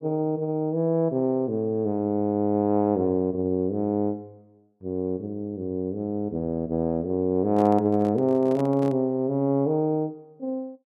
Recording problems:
microphone handling noise; from 7.5 to 9 s; peak -9 dB vs average level

